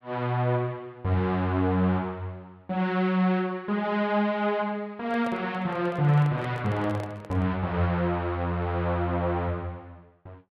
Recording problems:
handling noise; from 5 to 7.5 s; peak -9 dB vs average level

